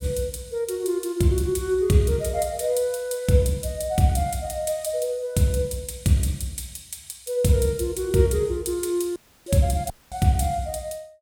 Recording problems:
dropout; at 9 s and at 10 s

